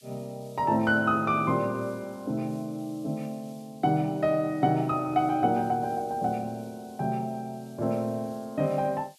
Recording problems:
background hiss; SNR 27 dB

